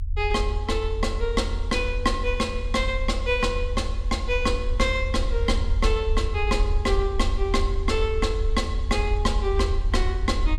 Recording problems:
rumble; below 76 Hz, strongest tone 30 Hz, SNR 2 dB

